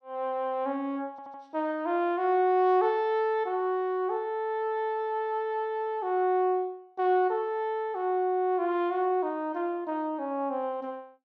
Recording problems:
stutter; at 1 s

